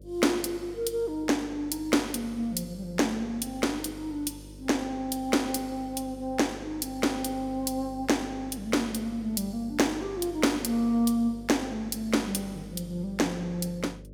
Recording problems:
electrical hum; 50 Hz, harmonics up to 600 Hz, SNR 18 dB

